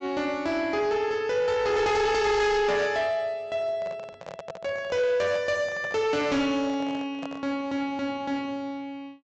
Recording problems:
treble cut off; nothing above 8 kHz
distortion; soft clipping, signal-to-distortion ratio 7 dB
microphone handling noise; from 3.5 to 7.5 s; peak -7 dB vs average level

